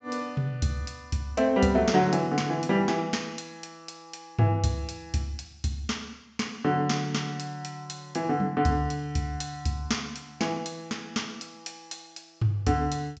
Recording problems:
low-pass filter; nothing above 8 kHz

